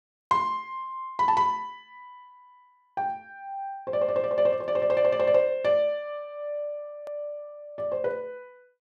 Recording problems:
click at an edit; at 7 s

